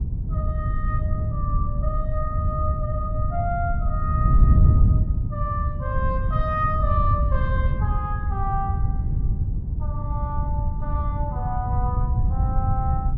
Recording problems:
wind on the microphone; below 110 Hz, SNR -6 dB

